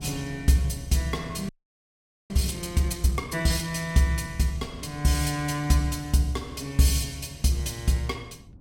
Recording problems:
wind noise; below 200 Hz, SNR 21 dB
audio freezing; at 1.5 s for 1 s

